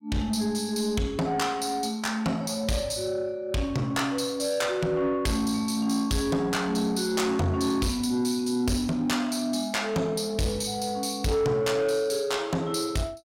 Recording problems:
distorted audio; soft clipping, signal-to-distortion ratio 11 dB

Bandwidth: 16 kHz